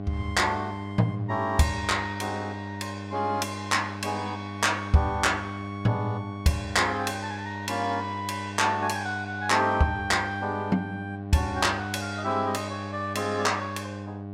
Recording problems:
hum; 50 Hz, harmonics up to 1.1 kHz, SNR 9 dB

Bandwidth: 16.5 kHz